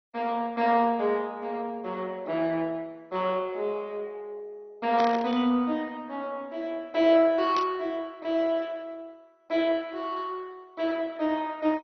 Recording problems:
lossy compression; MP2, log-spectral distance 3 dB, nothing above 6 kHz
burst of static; at 5 s and at 7.5 s; peak -4 dB vs average level

